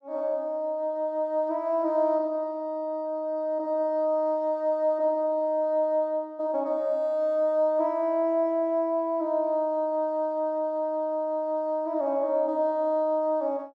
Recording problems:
none

